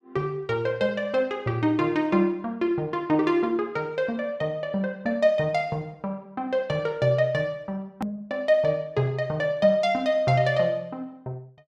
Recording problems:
hard cut with a click; at 8 s

